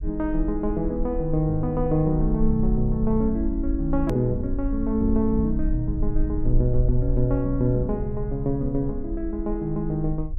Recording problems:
low-frequency rumble; below 48 Hz, strongest tone 18 Hz, SNR 6 dB
edit click; at 4 s

